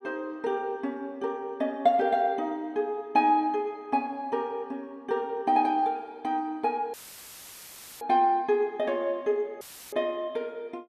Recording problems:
audio cutting out; at 7 s for 1 s and at 9.5 s; filled with static

